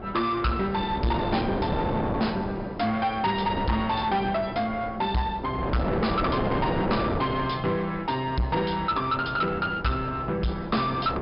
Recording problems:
treble cut off; nothing above 5.5 kHz
distortion; soft clipping, signal-to-distortion ratio 7 dB
wind noise; below 720 Hz, SNR 5 dB

